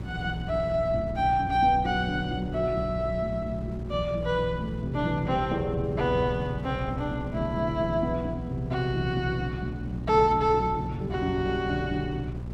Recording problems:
electrical hum; 60 Hz, harmonics up to 600 Hz, SNR 9 dB
wind on the microphone; below 200 Hz, SNR 15 dB

